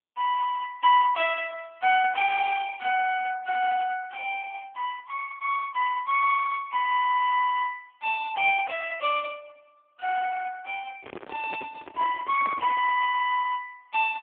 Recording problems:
telephone audio; 300 Hz to 3.1 kHz, AMR-NB
microphone handling noise; from 11 to 13 s; peak -11 dB vs average level

